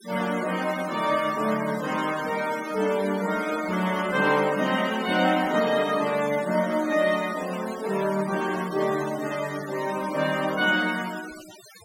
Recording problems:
denoising artefacts; signal-to-artefact ratio 14 dB

